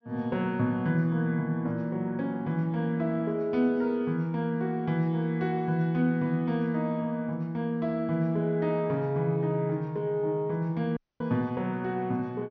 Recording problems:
treble missing; nothing above 6.3 kHz
dropout; at 11 s

